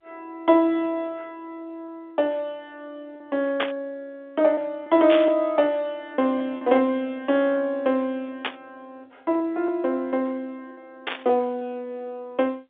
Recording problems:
telephone audio; 190 Hz to 3.6 kHz, G.711
lost packets; 4% of the sound replaced, filled with repeated pitch periods
burst of static; 4 times, first at 3.5 s; peak +2 dB vs average level

